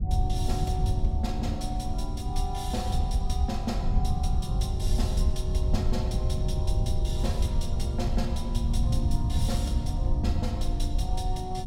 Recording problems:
rumble; below 92 Hz, SNR -5 dB

